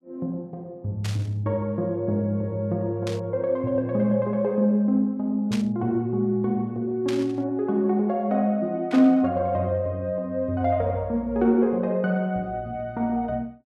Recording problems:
burst of static; 5 times, first at 1 s; peak -6 dB vs average level

